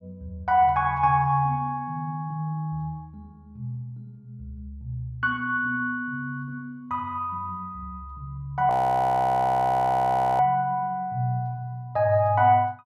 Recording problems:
frozen audio; at 8.5 s for 1.5 s

